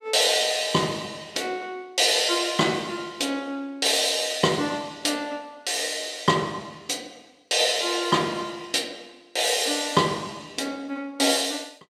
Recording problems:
none

